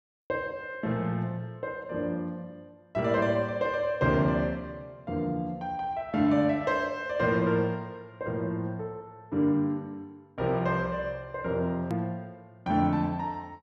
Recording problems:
hard cut with a click; at 12 s

